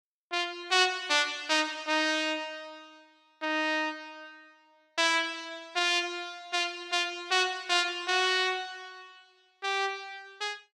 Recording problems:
none

